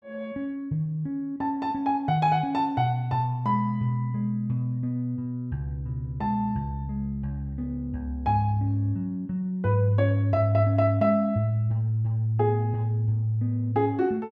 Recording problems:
none

